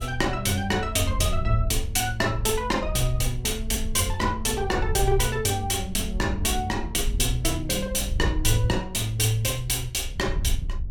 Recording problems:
wind on the microphone; below 72 Hz, SNR 7 dB

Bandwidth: 17 kHz